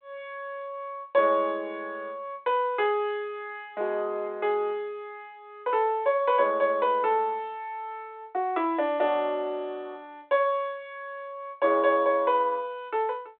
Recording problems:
phone line; 300 Hz to 3.6 kHz, G.726

